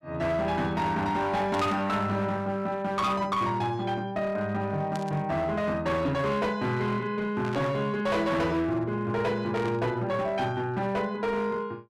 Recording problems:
distortion; hard clipping, uneven, signal-to-distortion ratio 11 dB
static burst; 4 times, first at 1.5 s; peak -8 dB vs average level

